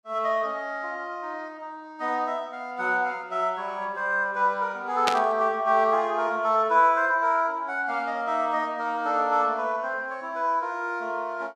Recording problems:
burst of static; at 5 s; peak +4 dB vs average level

